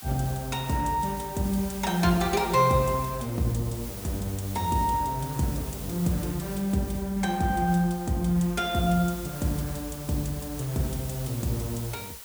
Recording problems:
background hiss; slope +1 dB per octave, SNR 13 dB

